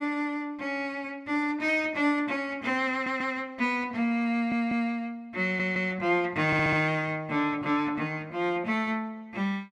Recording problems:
audio stuttering; 4 times, first at 3 s

